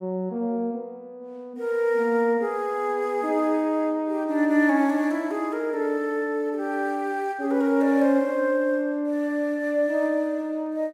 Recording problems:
none

